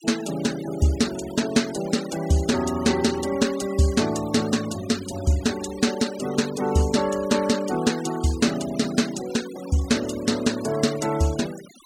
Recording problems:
noise reduction artefacts; signal-to-artefact ratio 15 dB

